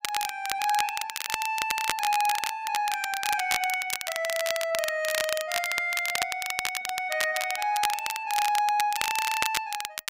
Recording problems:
crackle; vinyl, SNR 3 dB

